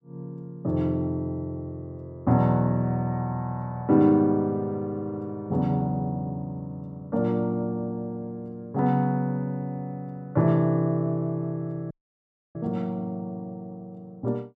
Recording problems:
dropout; at 12 s for 0.5 s

